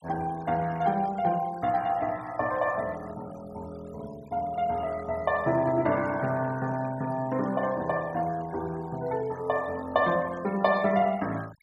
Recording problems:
noise reduction artefacts; signal-to-artefact ratio 21 dB

